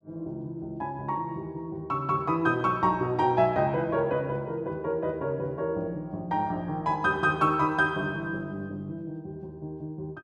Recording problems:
none

